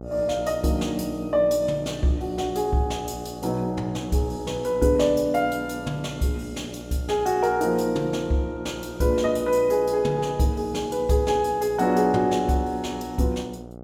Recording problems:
hum; 60 Hz, harmonics up to 1.3 kHz, SNR 15 dB

